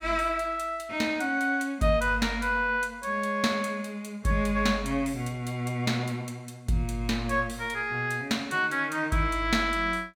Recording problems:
none

